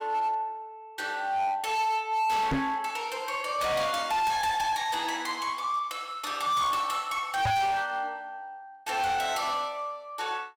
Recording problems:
distortion; hard clipping, signal-to-distortion ratio 7 dB
microphone bump; at 2.5 s and at 7.5 s; peak +5 dB vs average level

